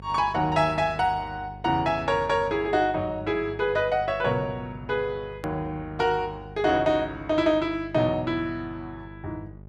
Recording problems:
hum; 50 Hz, harmonics up to 800 Hz, SNR 18 dB
hard cut with a click; at 5.5 s

